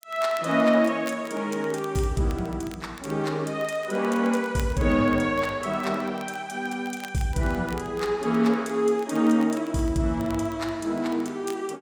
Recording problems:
crackle; vinyl, SNR 23 dB

